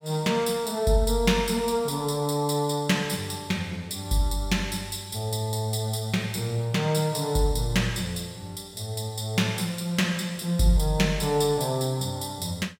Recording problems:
none

